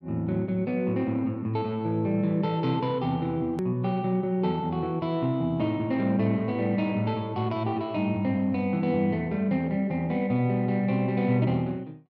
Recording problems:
click at an edit; at 3.5 s

